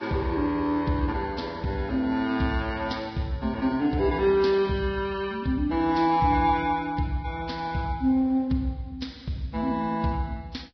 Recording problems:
codec artefacts; Vorbis, log-spectral distance 3 dB, nothing above 5.3 kHz

